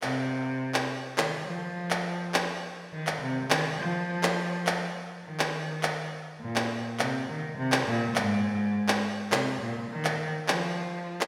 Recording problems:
none

